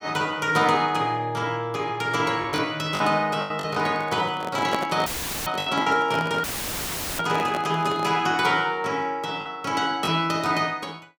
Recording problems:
lost packets; 4% of the sound replaced, filled with the last packet
handling noise; from 3.5 to 8 s; peak +2 dB vs average level
dropout; at 5 s and at 6.5 s for 1 s; filled with static

